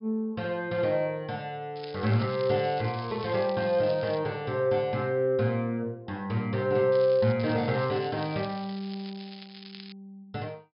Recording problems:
treble missing; nothing above 5.5 kHz
crackling; from 2 to 4 s, at 7 s and from 7.5 to 10 s; loose cable, SNR 18 dB

